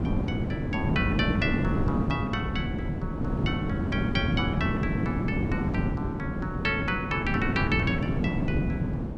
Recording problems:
wind on the microphone; below 290 Hz, SNR -4 dB

